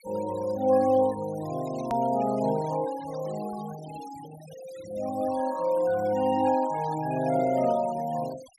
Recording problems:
denoising artefacts; signal-to-artefact ratio 20 dB
click at an edit; at 2 s

